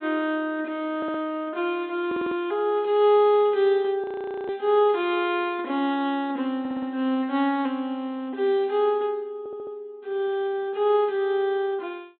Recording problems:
treble missing; nothing above 4 kHz
audio stuttering; 4 times, first at 1 s
frozen audio; at 4 s

